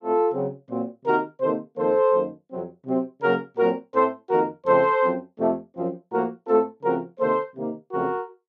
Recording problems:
none

